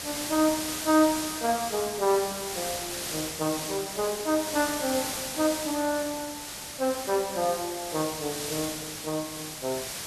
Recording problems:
hiss; slope 0 dB per octave, SNR 4 dB

